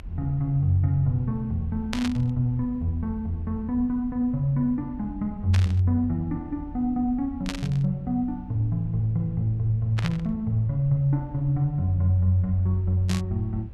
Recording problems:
rumble; below 80 Hz, SNR 16 dB
static burst; 5 times, first at 2 s; peak -2 dB vs average level

